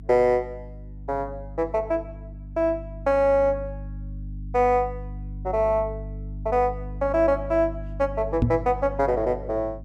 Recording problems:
hum; 50 Hz, harmonics up to 300 Hz, SNR 12 dB
microphone bump; at 8.5 s; peak +6 dB vs average level

